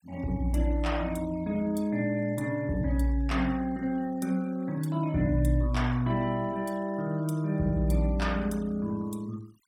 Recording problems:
denoising artefacts; signal-to-artefact ratio 24 dB

